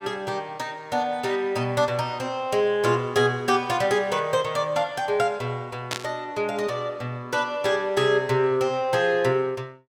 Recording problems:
burst of static; at 6 s; peak +1 dB vs average level

